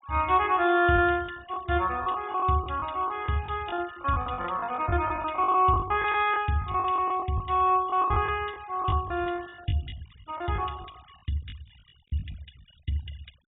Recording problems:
treble cut off; nothing above 4 kHz
noise reduction artefacts; signal-to-artefact ratio 24 dB
packet loss; 13% of the sound replaced, filled with the last packet

